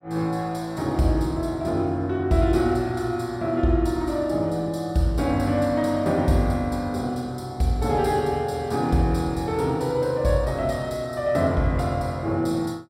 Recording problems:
none

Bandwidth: 16.5 kHz